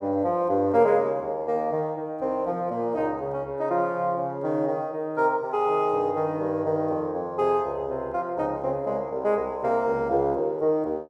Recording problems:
none

